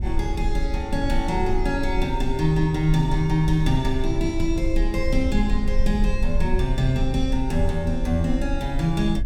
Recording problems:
rumble; below 50 Hz, strongest tone 18 Hz, SNR 4 dB

